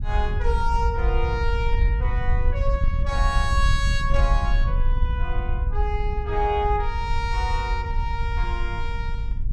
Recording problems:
wind on the microphone; below 64 Hz, SNR -3 dB

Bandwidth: 15 kHz